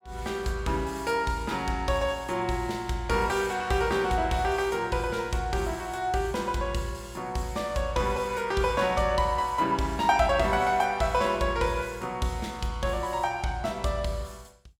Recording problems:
none

